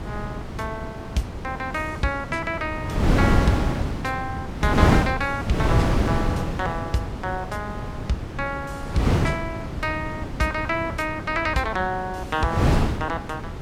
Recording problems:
wind noise; below 370 Hz, SNR -1 dB

